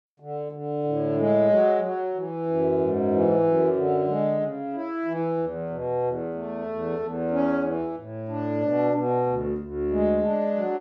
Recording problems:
none

